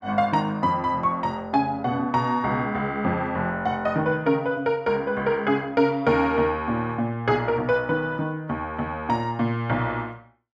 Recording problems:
none

